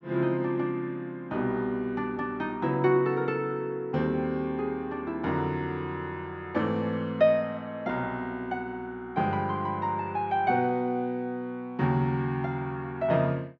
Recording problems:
treble missing; nothing above 8 kHz

